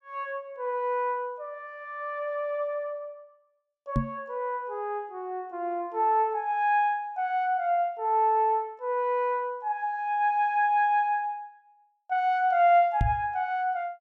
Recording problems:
microphone bump; at 4 s and at 13 s; peak +4 dB vs average level

